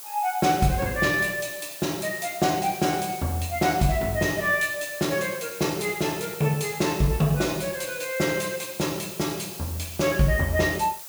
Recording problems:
hiss; slope 0 dB per octave, SNR 12 dB

